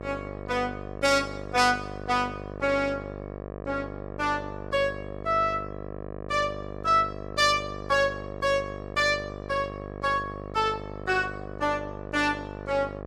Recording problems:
electrical hum; 50 Hz, harmonics up to 1.4 kHz, SNR 11 dB

